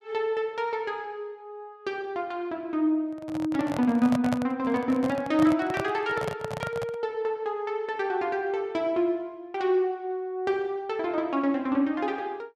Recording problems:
microphone handling noise; from 3 to 7 s; peak +1 dB vs average level

